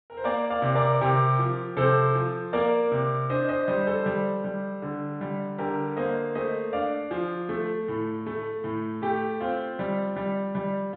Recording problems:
low-pass filter; nothing above 4 kHz

